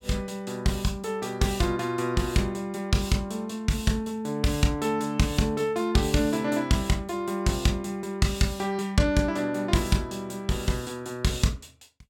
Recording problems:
none

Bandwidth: 17.5 kHz